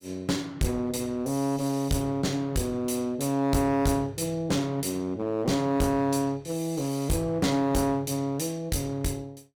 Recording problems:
distortion; hard clipping, uneven, signal-to-distortion ratio 6 dB

